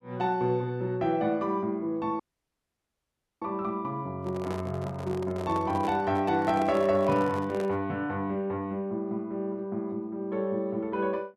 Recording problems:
audio cutting out; at 2 s for 1 s
handling noise; from 4 to 8 s; peak -4 dB vs average level

